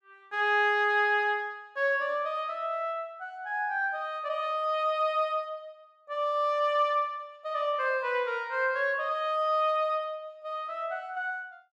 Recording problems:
none

